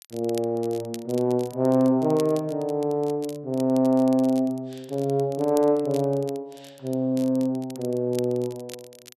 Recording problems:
crackle; vinyl, SNR 22 dB

